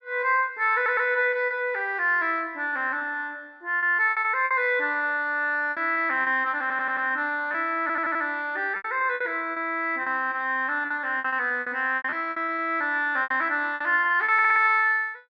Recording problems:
packet loss; 10% of the sound replaced, filled with repeated pitch periods
stutter; 4 times, first at 1 s

